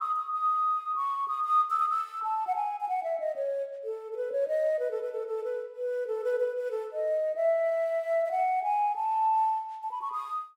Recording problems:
none

